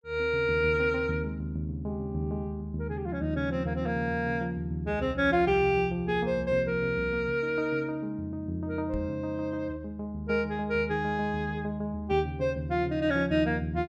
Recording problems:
microphone bump; at 9 s; peak -3 dB vs average level

